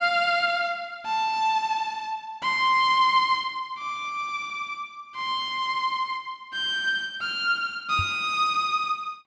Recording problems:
microphone thump; at 8 s; peak -2 dB vs average level

